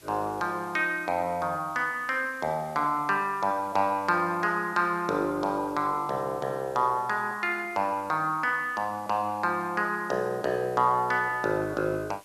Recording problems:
background hiss; slope -1 dB per octave, SNR 26 dB

